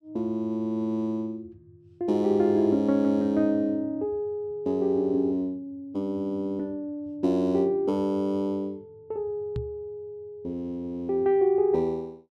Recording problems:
microphone thump; at 9.5 s; peak -2 dB vs average level

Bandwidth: 13.5 kHz